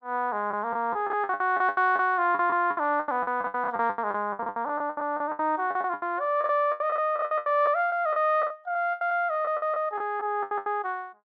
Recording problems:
lost packets; 20% of the sound replaced, filled with the last packet

